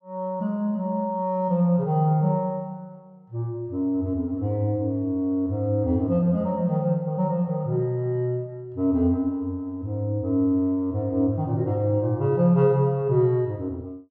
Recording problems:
none

